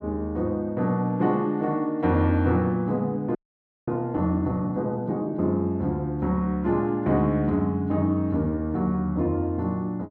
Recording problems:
frozen audio; at 3.5 s for 0.5 s

